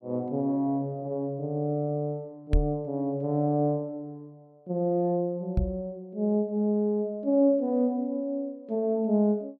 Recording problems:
microphone thump; at 2.5 s and at 5.5 s; peak +6 dB vs average level

